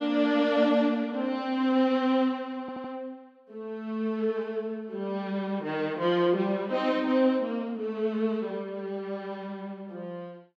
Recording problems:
stutter; at 2.5 s

